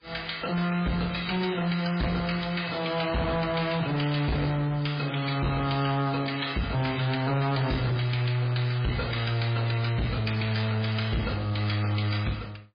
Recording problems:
codec artefacts; MP3, log-spectral distance 6 dB, nothing above 4.8 kHz
distortion; soft clipping, signal-to-distortion ratio 7 dB
crackle; from 1.5 to 3.5 s, from 4.5 to 7 s and at 11 s; loose cable, SNR 24 dB

